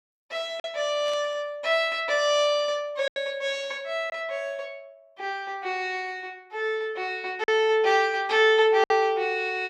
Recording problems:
lost packets; 3% of the sound replaced, filled with silence
static burst; at 1 s; peak -14 dB vs average level

